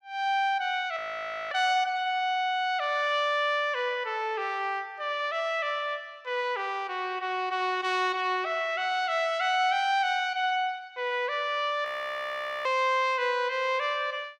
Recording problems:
audio freezing; at 1 s for 0.5 s and at 12 s for 1 s

